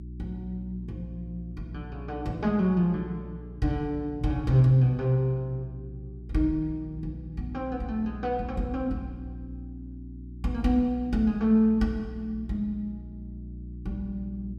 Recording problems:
hum; 60 Hz, harmonics up to 360 Hz, SNR 14 dB

